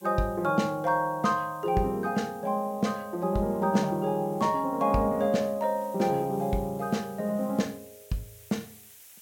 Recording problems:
hiss; SNR 24 dB

